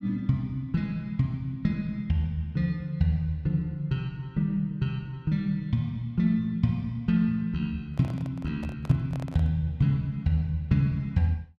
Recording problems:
microphone handling noise; from 8 to 9.5 s; peak -11 dB vs average level

